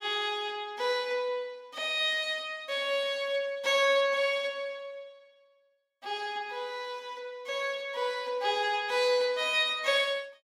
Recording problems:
none

